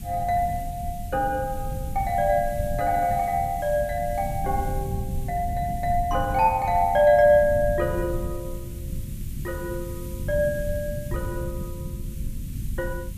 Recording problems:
hiss; slope +3 dB per octave, SNR 21 dB
rumble; below 140 Hz, SNR 9 dB

